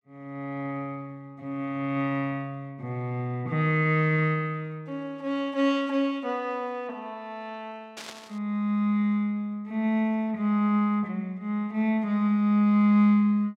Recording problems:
static burst; at 8 s; peak -9 dB vs average level

